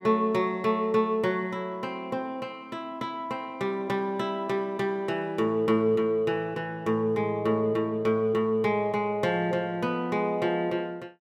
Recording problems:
none

